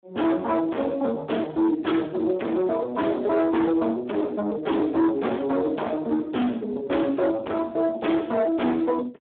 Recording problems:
phone line; 220 Hz to 3.5 kHz, Speex
distortion; soft clipping, signal-to-distortion ratio 7 dB

